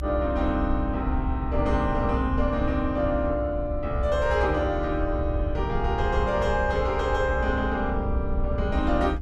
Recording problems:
low-frequency rumble; below 78 Hz, SNR 4 dB

